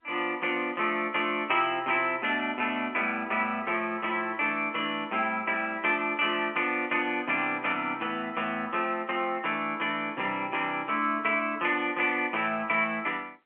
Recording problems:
phone line; 240 Hz to 3.5 kHz, G.711

